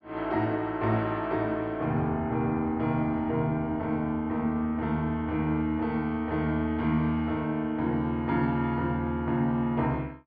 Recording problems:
low-pass filter; nothing above 5.6 kHz

